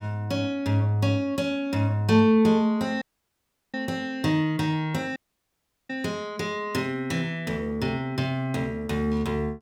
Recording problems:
audio cutting out; at 3 s for 0.5 s and at 5 s for 0.5 s

